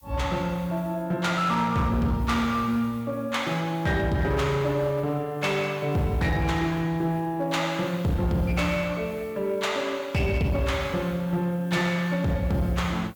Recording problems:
distortion; hard clipping, signal-to-distortion ratio 12 dB
background hiss; slope +2 dB per octave, SNR 28 dB

